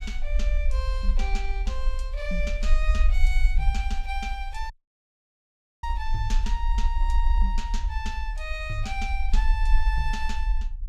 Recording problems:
rumble; below 48 Hz, SNR -6 dB
audio cutting out; at 4.5 s for 1 s

